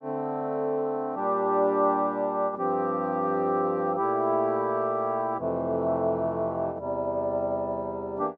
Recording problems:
none

